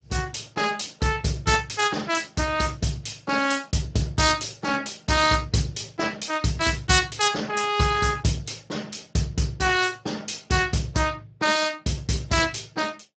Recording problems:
lossy compression; Speex, log-spectral distance 8 dB, nothing above 7.8 kHz

